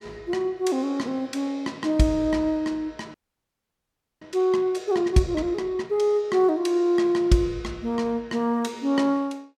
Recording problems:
frozen audio; at 3 s for 1 s

